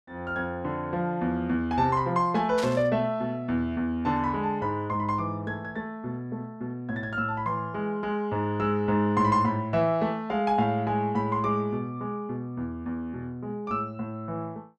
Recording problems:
static burst; at 2.5 s; peak -4 dB vs average level

